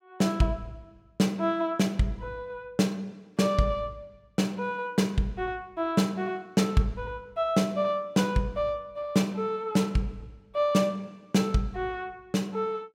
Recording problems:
none

